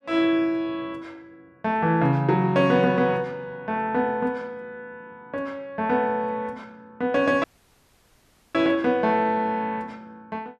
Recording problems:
audio cutting out; at 7.5 s for 1 s

